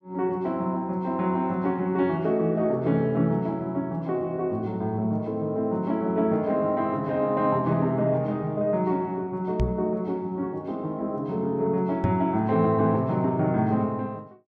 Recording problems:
knock on the microphone; at 9.5 s and at 12 s; peak +3 dB vs average level

